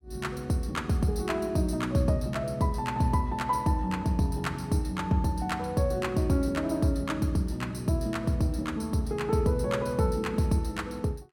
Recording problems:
none

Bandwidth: 17.5 kHz